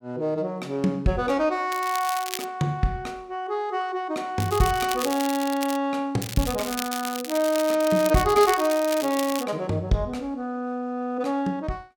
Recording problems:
crackle; at 1.5 s, from 4.5 to 6 s and from 6 to 9.5 s; loose cable, SNR 9 dB

